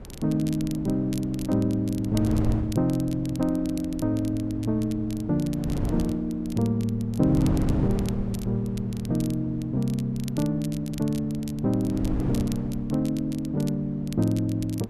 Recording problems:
wind noise; below 240 Hz, SNR 9 dB
crackle; vinyl, SNR 19 dB

